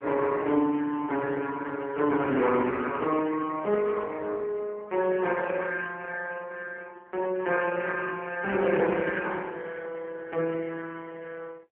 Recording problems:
telephone audio; 220 Hz to 3.1 kHz, AMR-NB

